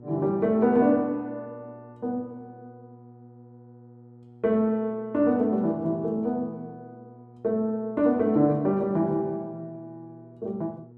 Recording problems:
hum; 60 Hz, harmonics up to 840 Hz, SNR 23 dB

